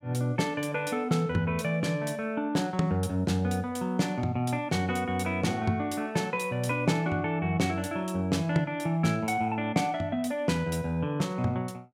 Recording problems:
none

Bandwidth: 17 kHz